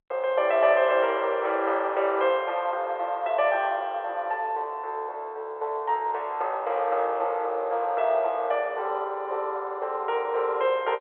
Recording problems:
telephone audio; 340 Hz to 3.6 kHz, G.711

